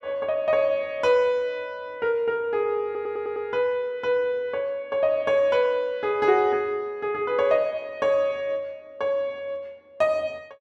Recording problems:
audio stuttering; at 3 s

